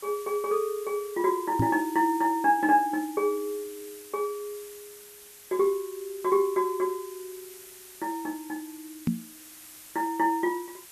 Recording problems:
background hiss; slope +1 dB per octave, SNR 18 dB
microphone bump; at 1.5 s and at 9 s; peak +5 dB vs average level

